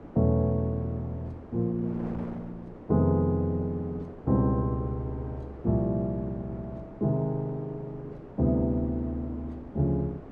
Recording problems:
wind noise; below 540 Hz, SNR 16 dB

